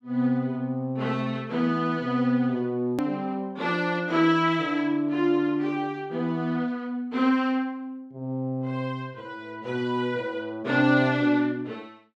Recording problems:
edit click; at 3 s

